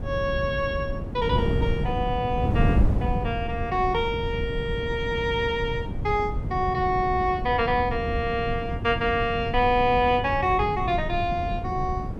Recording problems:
wind noise; below 190 Hz, SNR 4 dB

